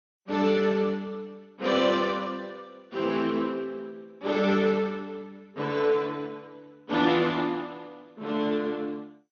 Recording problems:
lossy compression; Speex, then MP2, log-spectral distance 3 dB, nothing above 6.7 kHz

